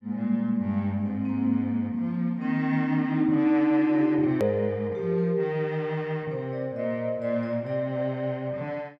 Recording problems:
edit click; at 4.5 s

